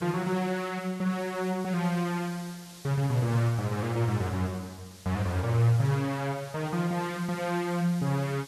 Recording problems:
background hiss; SNR 19 dB

